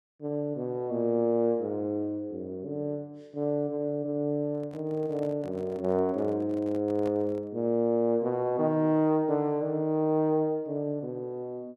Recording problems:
microphone handling noise; from 4.5 to 7.5 s; peak -10 dB vs average level

